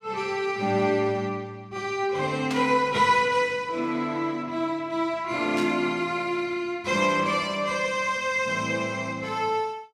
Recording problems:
burst of static; at 2.5 s and at 5.5 s; peak -5 dB vs average level

